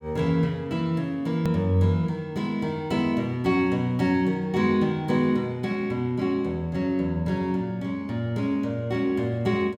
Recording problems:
edit click; at 1.5 s

